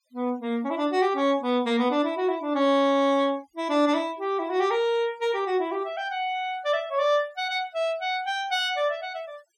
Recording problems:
denoising artefacts; signal-to-artefact ratio 27 dB

